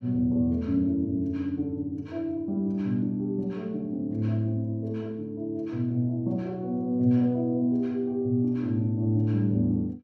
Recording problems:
none

